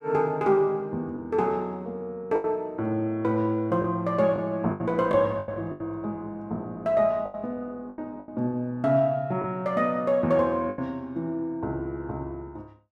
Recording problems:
packet loss; 6% of the sound replaced, filled with the last packet

